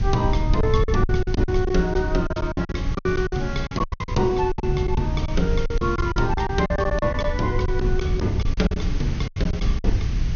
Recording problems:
low-pass filter; nothing above 6.6 kHz
background hiss; slope 0 dB per octave, SNR 18 dB
low-frequency rumble; below 86 Hz, SNR 2 dB
packet loss; 16% of the sound replaced, filled with silence

